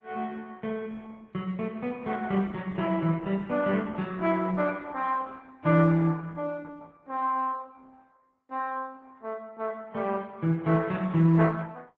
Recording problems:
lossy compression; AAC, then Opus, log-spectral distance 3 dB

